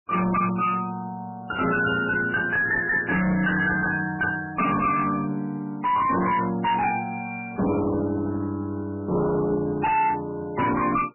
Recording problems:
lossy codec; MP3, log-spectral distance 4 dB, nothing above 2.6 kHz
distorted audio; hard clipping, uneven, signal-to-distortion ratio 7 dB

